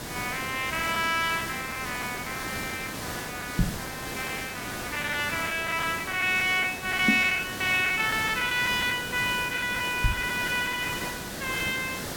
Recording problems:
background hiss; slope -4 dB per octave, SNR 8 dB
packet loss; 8% of the sound replaced, filled with the last packet
microphone thump; at 3.5 s, at 7 s and at 10 s; peak +7 dB vs average level

